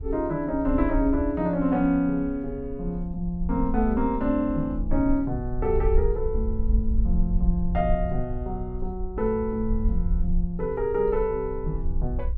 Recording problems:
wind noise; below 56 Hz, SNR 5 dB

